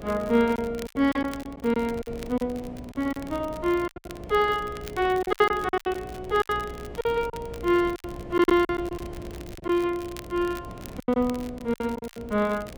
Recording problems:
hum; 60 Hz, harmonics up to 720 Hz, SNR 18 dB
wind noise; below 360 Hz, SNR 18 dB
crackling; vinyl, SNR 21 dB
packet loss; 12% of the sound replaced, filled with silence

